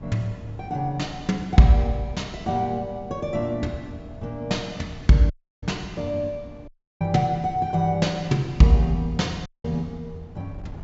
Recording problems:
low-pass filter; nothing above 8 kHz
wind noise; below 180 Hz, SNR 20 dB
dropout; at 5.5 s, at 6.5 s and at 9.5 s

